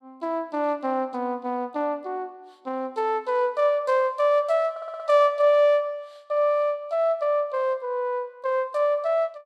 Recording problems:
audio stuttering; at 4.5 s

